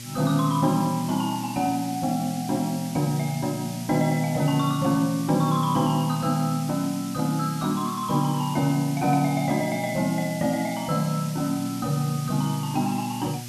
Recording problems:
hum; 60 Hz, harmonics up to 840 Hz, SNR 15 dB
hiss; slope +5 dB per octave, SNR 14 dB

